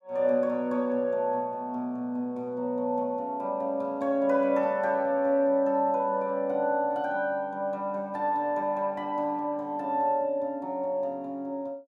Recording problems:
none

